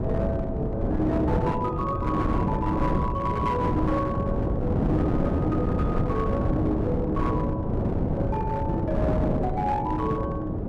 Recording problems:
distorted audio; hard clipping, uneven, signal-to-distortion ratio 11 dB
wind noise; below 360 Hz, SNR -2 dB

